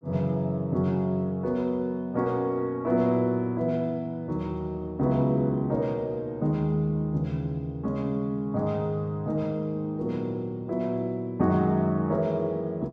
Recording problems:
none

